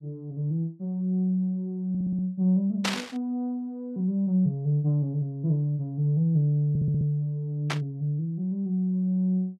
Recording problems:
audio stuttering; at 2 s and at 6.5 s
burst of static; at 3 s and at 7.5 s; peak +3 dB vs average level

